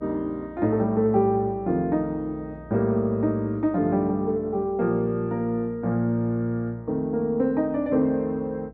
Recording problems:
hum; 60 Hz, harmonics up to 660 Hz, SNR 23 dB

